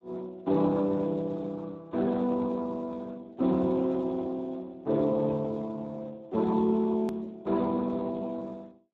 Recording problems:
codec artefacts; Speex, log-spectral distance 3 dB, nothing above 13.1 kHz
click at an edit; at 7 s

